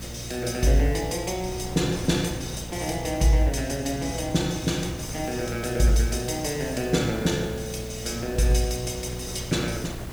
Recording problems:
electrical hum; 60 Hz, harmonics up to 480 Hz, SNR 12 dB
hiss; slope -1 dB per octave, SNR 18 dB
wind noise; below 490 Hz, SNR 15 dB

